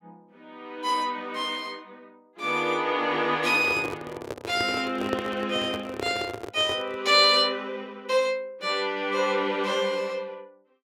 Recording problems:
microphone handling noise; from 3.5 to 7 s; peak -1 dB vs average level

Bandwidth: 16 kHz